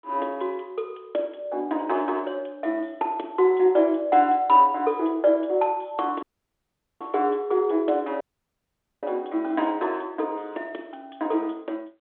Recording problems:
phone line; 280 Hz to 3.7 kHz, G.726
dropout; at 6 s for 1 s and at 8 s for 1 s

